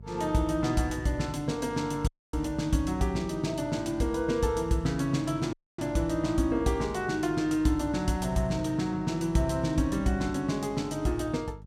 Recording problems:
hum; 50 Hz, harmonics up to 450 Hz, SNR 19 dB
dropout; at 2 s and at 5.5 s

